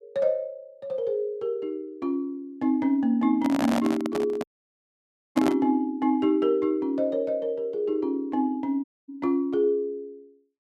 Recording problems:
microphone handling noise; from 3.5 to 5.5 s; peak +3 dB vs average level
audio cutting out; at 4.5 s for 1 s and at 9 s

